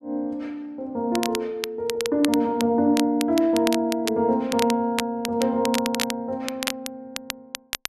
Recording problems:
crackle; vinyl, SNR 8 dB

